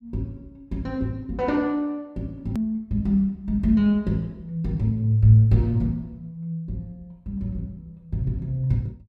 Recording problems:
click at an edit; at 2.5 s

